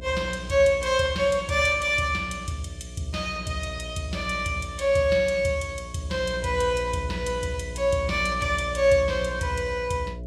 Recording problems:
hum; 60 Hz, harmonics up to 660 Hz, SNR 13 dB

